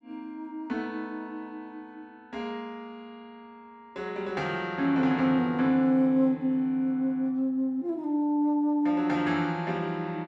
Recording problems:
none

